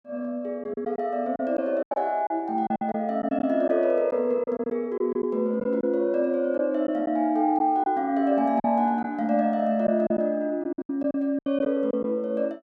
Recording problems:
packet loss; 8% of the sound replaced, filled with silence

